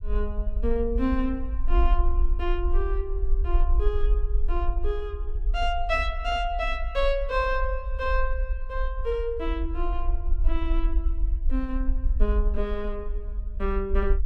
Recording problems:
low-frequency rumble; below 48 Hz, SNR -1 dB

